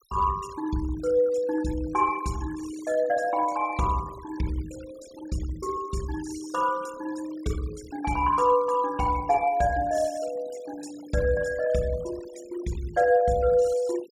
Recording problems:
denoising artefacts; signal-to-artefact ratio 20 dB

